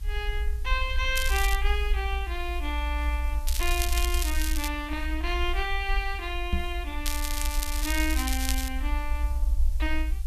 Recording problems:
hiss; slope +2 dB per octave, SNR 20 dB
low-frequency rumble; below 58 Hz, SNR -1 dB
crackling; at 1 s, from 3.5 to 4.5 s and from 7 to 8.5 s; loose cable, SNR 2 dB
knock on the microphone; at 6.5 s; peak +7 dB vs average level

